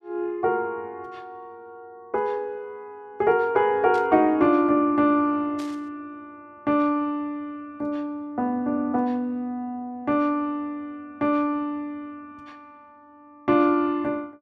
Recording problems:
burst of static; at 4 s and at 5.5 s; peak -14 dB vs average level

